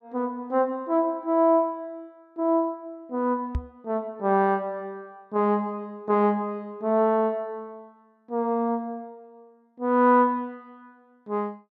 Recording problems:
microphone bump; at 3.5 s; peak 0 dB vs average level

